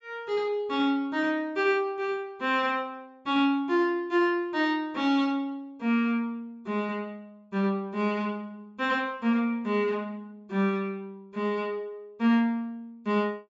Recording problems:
treble cut off; nothing above 7.6 kHz

